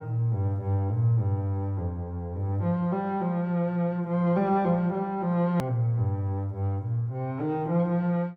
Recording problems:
hard cut with a click; at 5.5 s

